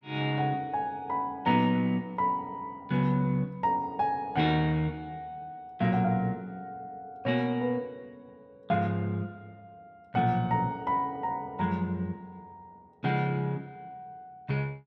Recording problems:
none

